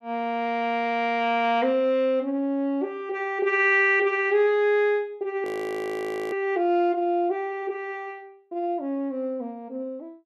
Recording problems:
frozen audio; at 5.5 s for 1 s

